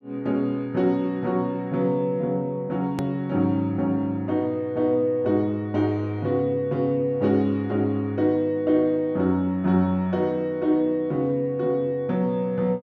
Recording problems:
edit click; at 3 s

